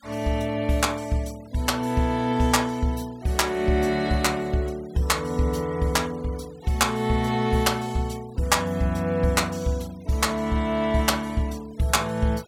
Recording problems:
noise reduction artefacts; signal-to-artefact ratio 23 dB

